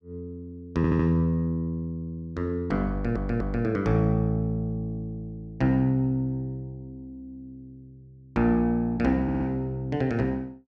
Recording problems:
stutter; at 1 s, at 3 s and at 9 s

